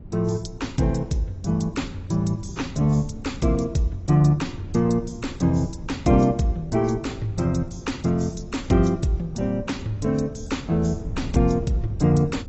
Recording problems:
lossy compression; AAC, log-spectral distance 3 dB, nothing above 7.8 kHz
wind noise; below 150 Hz, SNR 14 dB

